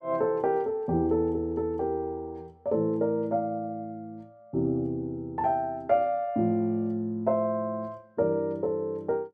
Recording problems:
none

